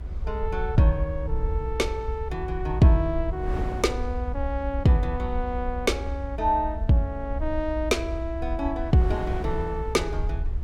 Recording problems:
low-frequency rumble; below 66 Hz, SNR 6 dB
wind noise; below 410 Hz, SNR 16 dB

